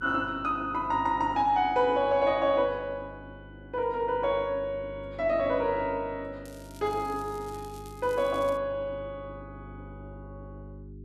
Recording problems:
hum; 50 Hz, harmonics up to 400 Hz, SNR 18 dB
crackle; from 6.5 to 8.5 s; loose cable, SNR 24 dB

